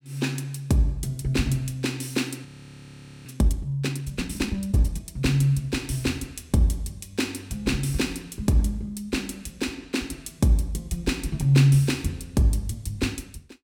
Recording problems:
frozen audio; at 2.5 s for 1 s

